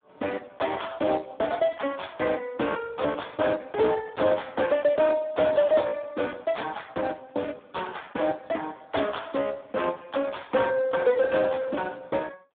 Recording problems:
phone line; 240 Hz to 3.7 kHz, Speex
distorted audio; soft clipping, signal-to-distortion ratio 11 dB

